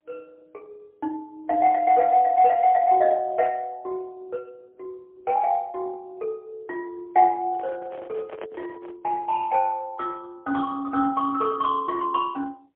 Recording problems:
phone line; 300 Hz to 3.1 kHz, AMR-NB, then MP3
microphone handling noise; from 7.5 to 9 s; peak -11 dB vs average level

